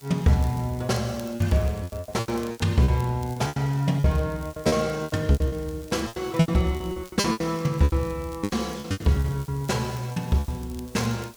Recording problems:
hiss; SNR 24 dB
crackling; vinyl, SNR 25 dB
packet loss; 16% of the sound replaced, filled with repeated pitch periods

